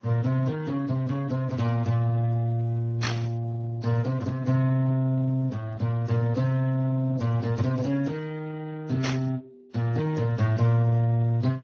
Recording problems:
lossy codec; Vorbis, then Speex, log-spectral distance 2 dB
static burst; at 3 s and at 9 s; peak +1 dB vs average level

